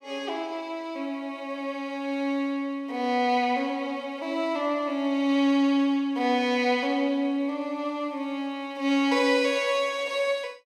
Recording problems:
none

